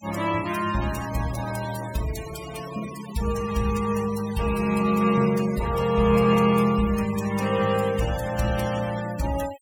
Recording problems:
noise reduction artefacts; signal-to-artefact ratio 14 dB

